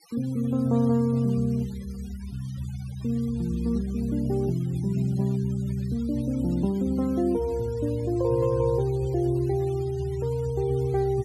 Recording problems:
denoising artefacts; signal-to-artefact ratio 24 dB

